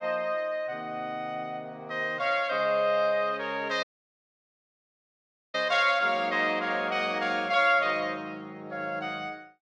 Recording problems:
dropout; at 4 s for 1.5 s

